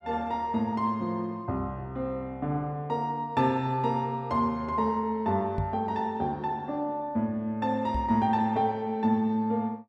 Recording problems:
microphone bump; at 5.5 s and at 8 s; peak 0 dB vs average level

